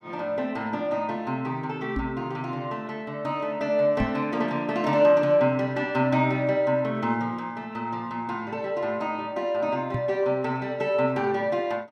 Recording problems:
knock on the microphone; at 2 s, at 4 s and at 10 s; peak +2 dB vs average level

